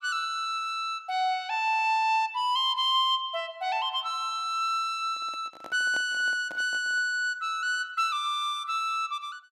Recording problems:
microphone handling noise; from 5 to 7 s; peak -11 dB vs average level

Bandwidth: 13 kHz